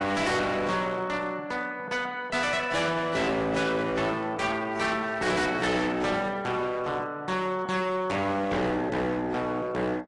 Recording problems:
lossy codec; AAC, log-spectral distance 3 dB, nothing above 10.4 kHz
distorted audio; hard clipping, signal-to-distortion ratio 7 dB

